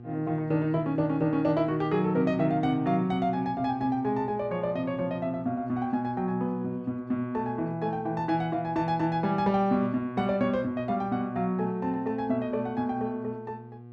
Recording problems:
hum; 60 Hz, harmonics up to 840 Hz, SNR 17 dB

